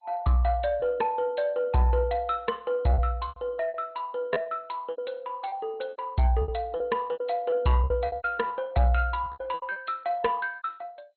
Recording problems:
codec artefacts; MP2, log-spectral distance 2 dB, nothing above 4.2 kHz
distortion; soft clipping, signal-to-distortion ratio 12 dB
packet loss; 11% of the sound replaced, filled with repeated pitch periods

